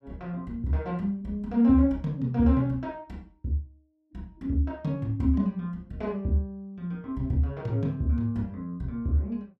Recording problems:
none

